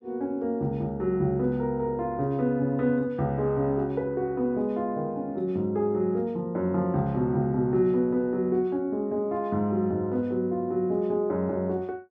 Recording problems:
none

